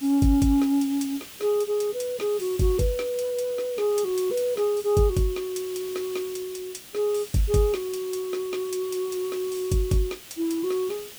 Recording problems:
hiss; SNR 15 dB

